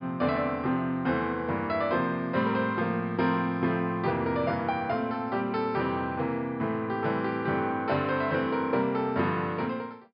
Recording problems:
treble cut off; nothing above 5.5 kHz

